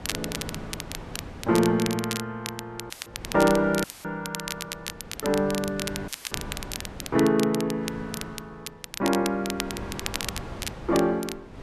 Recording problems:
wind on the microphone; below 670 Hz, SNR 15 dB
crackle; vinyl, SNR 9 dB
audio cutting out; at 3 s, at 4 s and at 6 s; filled with static

